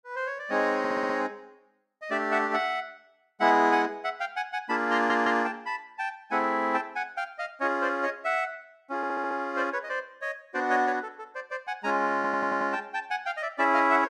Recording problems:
stutter; 4 times, first at 1 s

